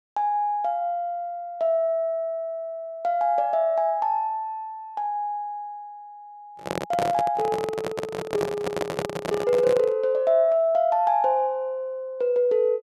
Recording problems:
handling noise; from 6.5 to 10 s; peak +1 dB vs average level

